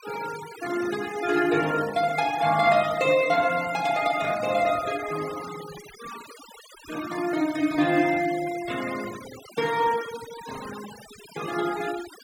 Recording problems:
denoising artefacts; signal-to-artefact ratio 15 dB

